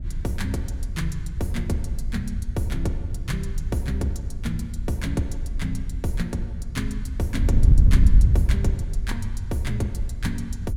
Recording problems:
wind on the microphone; below 78 Hz, SNR -3 dB

